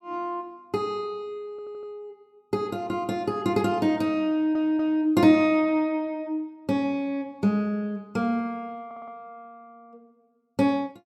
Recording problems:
stutter; at 1.5 s, at 4.5 s and at 9 s

